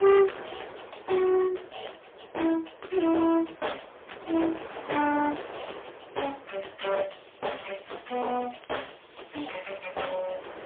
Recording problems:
telephone audio; 320 Hz to 3.5 kHz, AMR-NB, then MP3
distortion; hard clipping, uneven, signal-to-distortion ratio 8 dB
wind noise; below 1.4 kHz, SNR 16 dB
crackling; from 7 to 10 s; loose cable, SNR 25 dB

